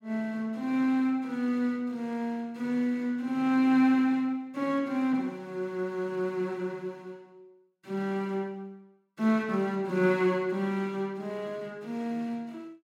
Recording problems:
none

